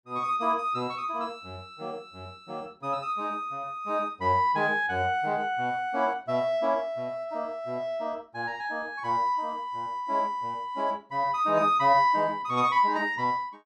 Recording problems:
none

